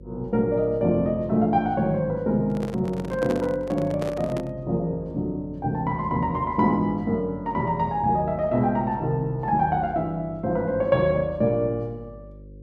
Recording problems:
hum; 50 Hz, harmonics up to 550 Hz, SNR 20 dB
microphone handling noise; from 2.5 to 4.5 s; peak -3 dB vs average level

